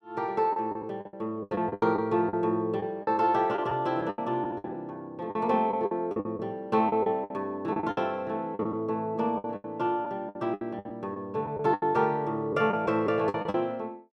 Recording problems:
packet loss; 14% of the sound replaced, filled with the last packet

